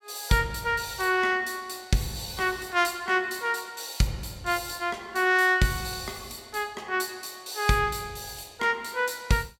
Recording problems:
none

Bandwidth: 17 kHz